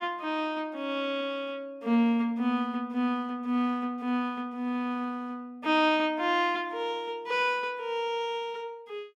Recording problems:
none

